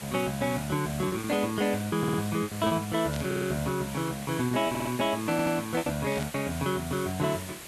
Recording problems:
background hiss; slope -2 dB per octave, SNR 11 dB
lost packets; 8% of the sound replaced, filled with repeated pitch periods
audio stuttering; 4 times, first at 2 s
burst of static; at 3 s and at 6 s; peak -7 dB vs average level

